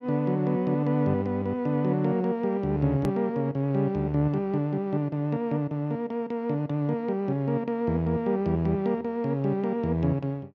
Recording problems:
edit click; at 3 s

